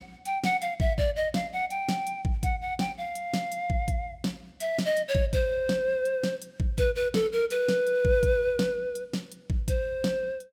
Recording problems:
none

